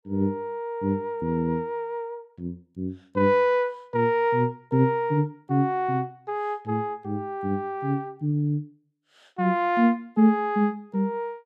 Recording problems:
none

